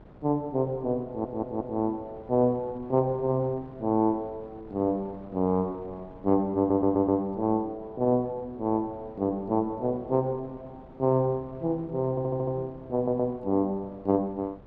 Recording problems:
wind on the microphone; below 530 Hz, SNR 22 dB
stutter; 4 times, first at 1 s

